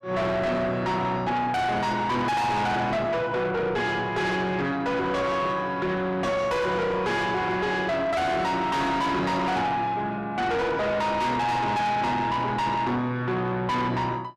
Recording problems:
distortion; soft clipping, signal-to-distortion ratio 5 dB

